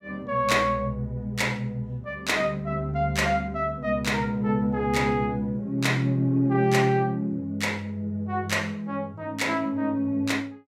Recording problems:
none

